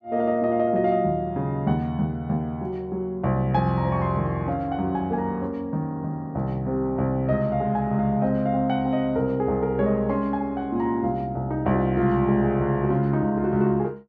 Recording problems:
none

